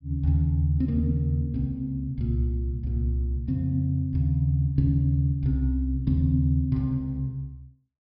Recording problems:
treble cut off; nothing above 5.5 kHz

